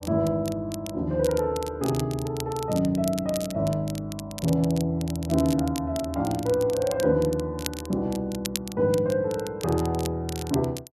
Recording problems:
crackle; vinyl, SNR 13 dB

